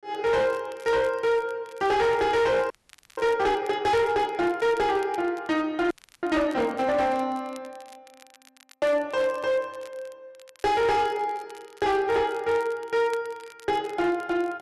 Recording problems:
distorted audio; hard clipping, signal-to-distortion ratio 11 dB
crackling; vinyl, SNR 27 dB
audio freezing; at 2.5 s and at 6 s

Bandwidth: 12 kHz